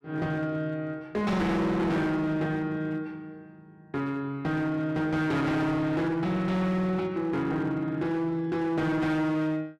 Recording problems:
distorted audio; hard clipping, signal-to-distortion ratio 7 dB

